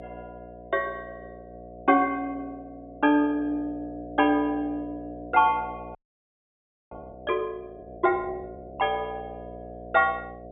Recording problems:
treble missing; nothing above 4 kHz
hum; 60 Hz, harmonics up to 720 Hz, SNR 16 dB
frozen audio; at 6 s for 1 s

